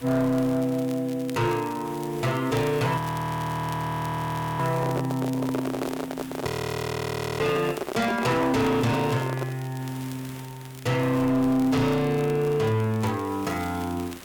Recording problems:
distortion; hard clipping, signal-to-distortion ratio 11 dB
hiss; SNR 20 dB
crackling; vinyl, SNR 21 dB
frozen audio; at 3 s for 1.5 s and at 6.5 s for 1 s
handling noise; from 4.5 to 9.5 s; peak 0 dB vs average level

